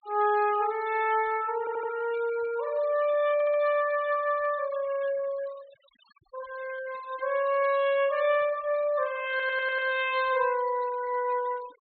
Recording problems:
treble cut off; nothing above 4.3 kHz
noise reduction artefacts; signal-to-artefact ratio 19 dB
audio stuttering; at 1.5 s, at 3.5 s and at 9.5 s

